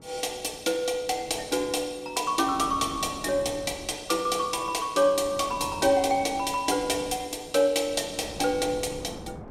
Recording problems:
wind on the microphone; below 540 Hz, SNR 18 dB

